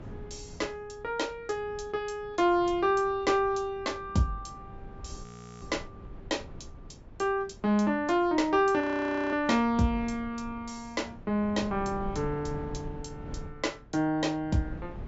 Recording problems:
low-pass filter; nothing above 8 kHz
wind on the microphone; below 210 Hz, SNR 17 dB
frozen audio; at 5 s and at 9 s for 0.5 s

